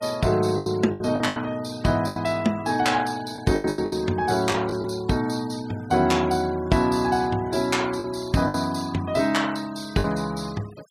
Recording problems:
noise reduction artefacts; signal-to-artefact ratio 21 dB
packet loss; 7% of the sound replaced, filled with the last packet

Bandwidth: 15.5 kHz